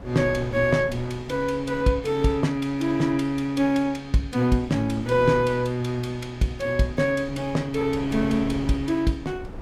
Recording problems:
wind on the microphone; below 390 Hz, SNR 16 dB

